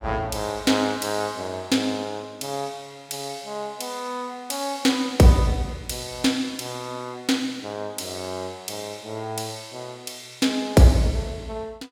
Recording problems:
none

